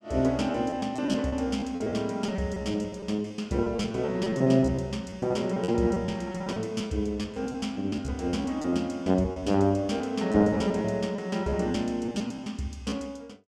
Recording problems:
lost packets; 15% of the sound replaced, filled with repeated pitch periods

